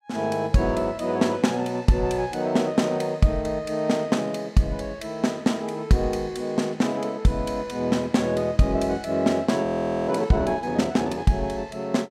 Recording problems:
frozen audio; at 9.5 s

